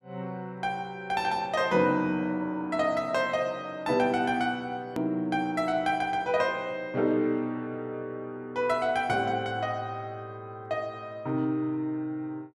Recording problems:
click at an edit; at 5 s

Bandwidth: 14.5 kHz